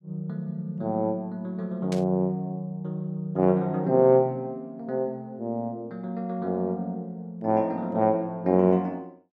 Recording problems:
static burst; at 2 s; peak -8 dB vs average level

